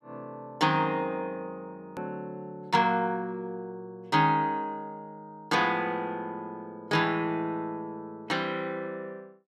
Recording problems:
hard cut with a click; at 2 s

